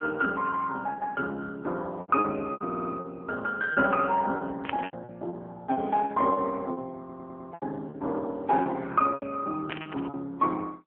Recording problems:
telephone audio; 220 Hz to 2.8 kHz, AMR-NB
packet loss; 10% of the sound replaced, filled with repeated pitch periods
audio stuttering; at 2.5 s and at 7 s
burst of static; at 4.5 s and at 9.5 s; peak -4 dB vs average level

